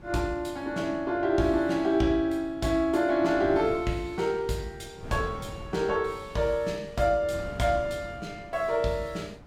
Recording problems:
wind on the microphone; below 330 Hz, SNR 17 dB

